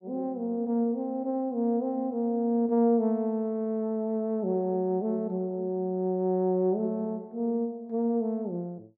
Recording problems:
none

